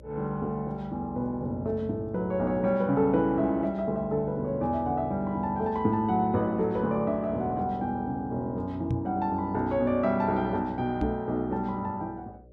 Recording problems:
hum; 60 Hz, harmonics up to 600 Hz, SNR 23 dB
microphone bump; at 9 s and at 11 s; peak +2 dB vs average level

